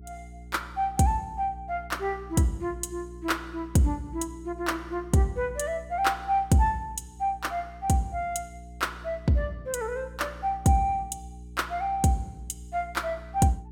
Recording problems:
hum; 60 Hz, harmonics up to 420 Hz, SNR 17 dB

